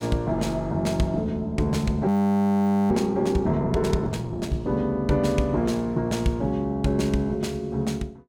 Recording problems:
audio freezing; at 2 s for 1 s

